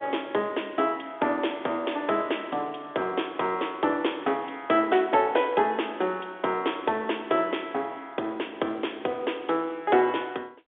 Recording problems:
telephone audio; 280 Hz to 3.6 kHz, G.711

